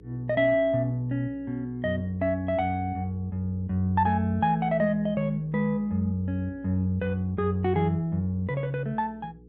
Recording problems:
mains hum; 60 Hz, harmonics up to 480 Hz, SNR 23 dB

